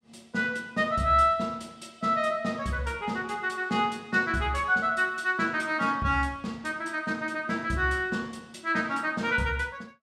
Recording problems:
none

